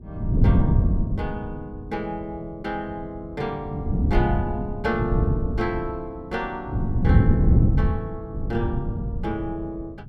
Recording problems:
wind on the microphone; below 170 Hz, SNR -6 dB

